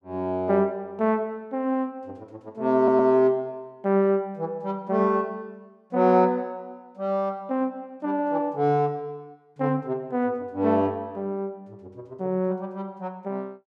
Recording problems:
stutter; at 3 s

